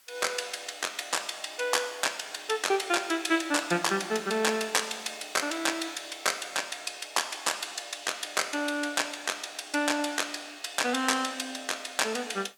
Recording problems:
hiss; slope +1 dB per octave, SNR 28 dB

